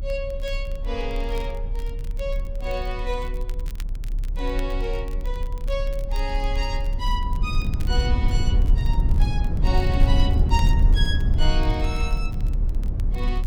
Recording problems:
rumble; below 68 Hz, strongest tone 34 Hz, SNR -6 dB
crackling; vinyl, SNR 19 dB

